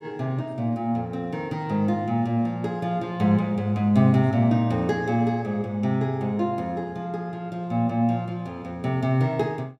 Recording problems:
none

